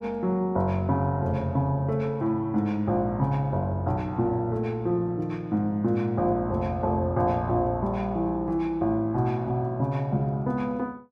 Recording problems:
none

